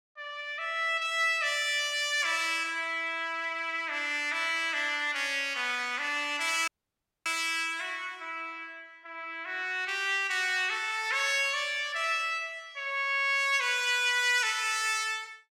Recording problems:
audio cutting out; at 6.5 s for 0.5 s

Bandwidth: 16.5 kHz